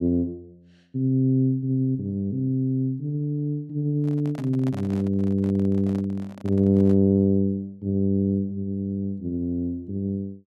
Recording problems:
microphone handling noise; from 4 to 7 s; peak -10 dB vs average level

